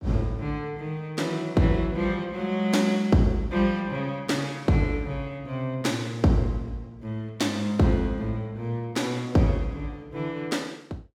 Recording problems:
none

